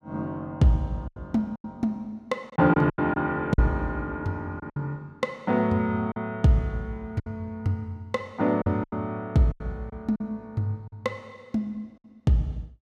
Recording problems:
lost packets; 7% of the sound replaced, filled with silence

